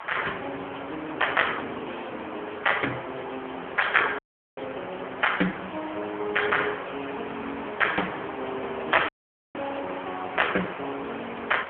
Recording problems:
telephone audio; 260 Hz to 3.3 kHz, AMR-NB
hiss; SNR 9 dB
dropout; at 4 s and at 9 s

